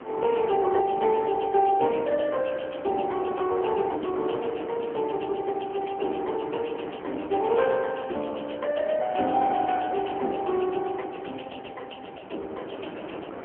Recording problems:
telephone audio; 280 Hz to 3.1 kHz, AMR-NB
wind noise; below 880 Hz, SNR 13 dB

